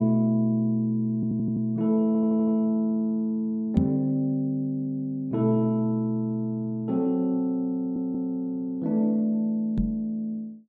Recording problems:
audio stuttering; at 1 s, at 2 s and at 8 s
microphone bump; at 4 s and at 10 s; peak +4 dB vs average level

